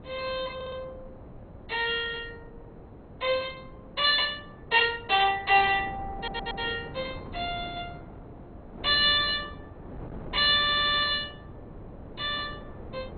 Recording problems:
codec artefacts; MP2, log-spectral distance 3 dB, nothing above 3.6 kHz
wind noise; below 480 Hz, SNR 18 dB
audio stuttering; at 0.5 s, at 6 s and at 11 s

